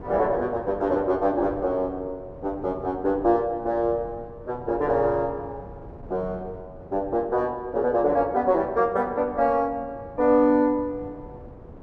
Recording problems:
wind noise; below 430 Hz, SNR 19 dB

